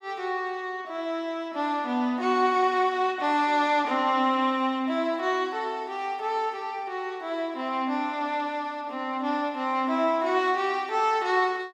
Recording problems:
none

